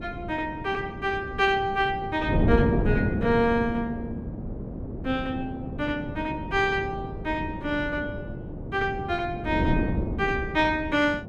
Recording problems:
wind on the microphone; below 310 Hz, SNR 5 dB

